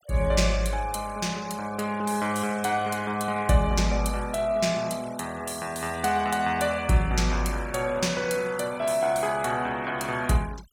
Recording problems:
denoising artefacts; signal-to-artefact ratio 20 dB

